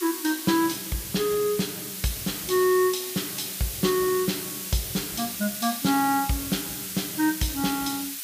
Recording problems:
background hiss; SNR 5 dB

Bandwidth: 15 kHz